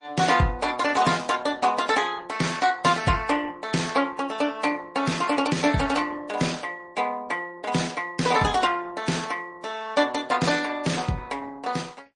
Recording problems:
lossy compression; Opus, then MP3, log-spectral distance 4 dB, nothing above 9.8 kHz

